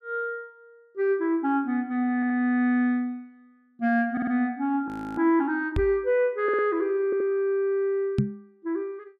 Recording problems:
stutter; 4 times, first at 2 s
audio freezing; at 5 s
microphone thump; at 6 s and at 8 s; peak +6 dB vs average level

